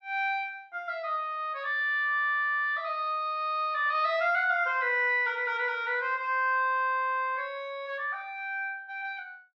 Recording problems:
none

